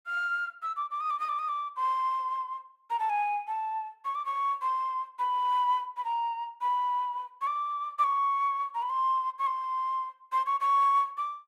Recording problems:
none

